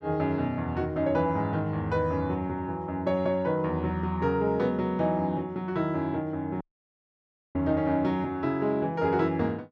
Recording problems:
dropout; at 6.5 s for 1 s

